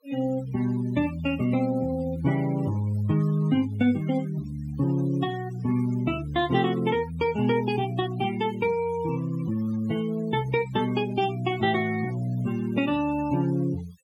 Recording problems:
denoising artefacts; signal-to-artefact ratio 18 dB

